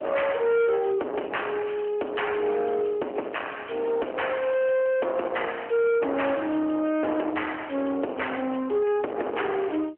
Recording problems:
phone line; 240 Hz to 3.2 kHz, AMR-NB
distortion; soft clipping, signal-to-distortion ratio 8 dB

